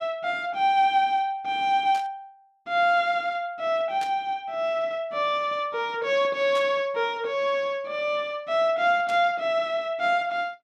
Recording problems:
burst of static; 4 times, first at 2 s; peak -10 dB vs average level

